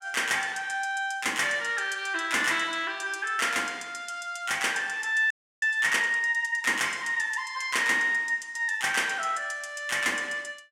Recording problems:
frozen audio; at 5.5 s

